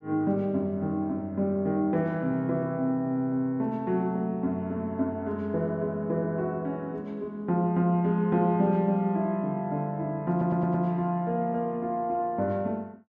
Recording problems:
stutter; at 10 s

